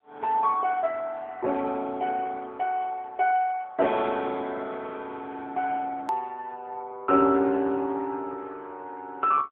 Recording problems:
phone line; 240 Hz to 3.6 kHz, AMR-NB
hard cut with a click; at 6 s

